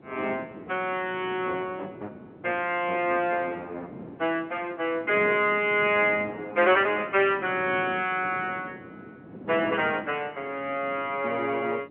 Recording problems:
telephone audio; 240 Hz to 3.3 kHz, G.711
wind on the microphone; below 450 Hz, SNR 17 dB

